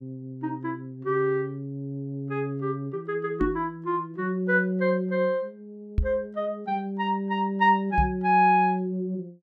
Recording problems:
microphone thump; at 3.5 s, at 6 s and at 8 s; peak +5 dB vs average level

